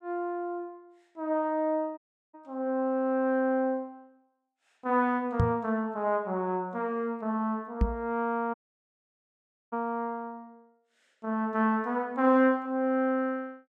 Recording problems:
audio cutting out; at 2 s and at 8.5 s for 1 s
knock on the microphone; at 5.5 s and at 8 s; peak +7 dB vs average level

